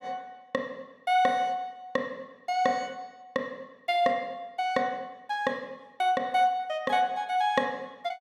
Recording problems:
none

